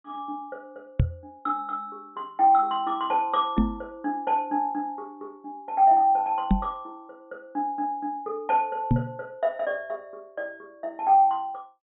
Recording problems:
low-pass filter; nothing above 4 kHz
microphone bump; 4 times, first at 1 s; peak +7 dB vs average level

